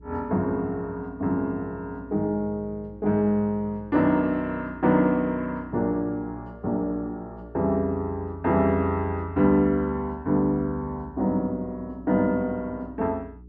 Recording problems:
hum; 60 Hz, harmonics up to 420 Hz, SNR 22 dB

